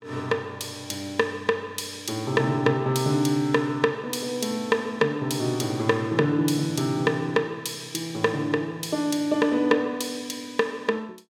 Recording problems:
none

